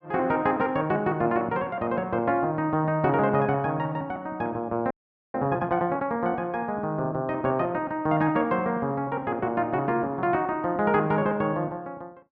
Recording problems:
audio freezing; at 5 s

